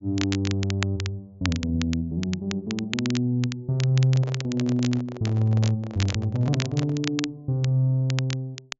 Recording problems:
low-pass filter; nothing above 7.4 kHz
crackle; vinyl, SNR 11 dB
microphone handling noise; from 4 to 7 s; peak -7 dB vs average level

